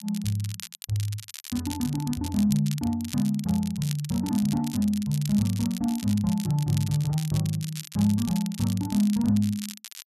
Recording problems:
crackle; vinyl, SNR 13 dB

